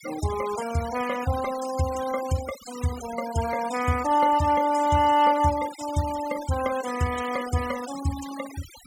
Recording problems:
denoising artefacts; signal-to-artefact ratio 14 dB

